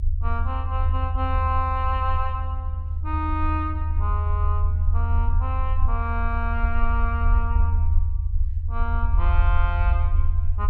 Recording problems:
rumble; below 80 Hz, SNR -5 dB

